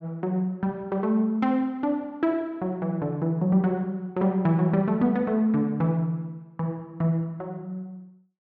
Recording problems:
none

